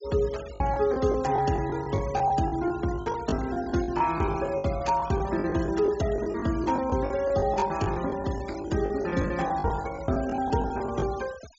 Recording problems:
low-pass filter; nothing above 7.5 kHz
noise reduction artefacts; signal-to-artefact ratio 18 dB
packet loss; 15% of the sound replaced, filled with the last packet

